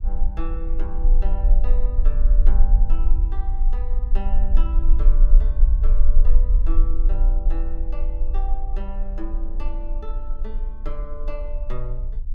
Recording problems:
low-frequency rumble; below 38 Hz, strongest tone 20 Hz, SNR -15 dB

